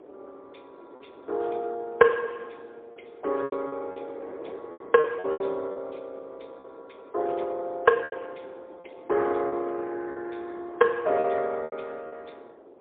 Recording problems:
telephone audio; 300 Hz to 2.8 kHz, AMR-NB, then MP3
wind noise; below 590 Hz, SNR 20 dB
lost packets; 7% of the sound replaced, filled with repeated pitch periods

